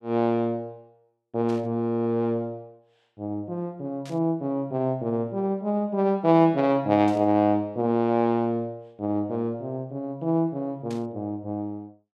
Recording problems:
static burst; 4 times, first at 1.5 s; peak -15 dB vs average level

